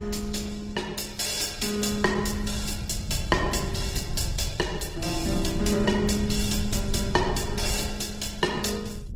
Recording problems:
codec artefacts; Opus, log-spectral distance 6 dB
wind on the microphone; below 110 Hz, SNR 8 dB

